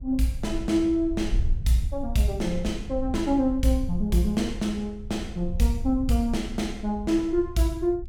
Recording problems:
low-frequency rumble; below 64 Hz, SNR 9 dB

